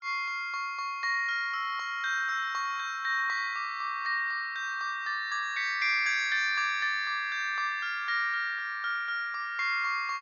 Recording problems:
treble missing; nothing above 6.8 kHz

